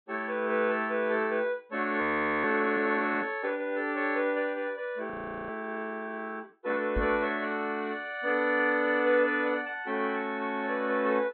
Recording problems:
treble cut off; nothing above 4 kHz
frozen audio; at 2 s and at 5 s
microphone thump; at 7 s; peak -1 dB vs average level

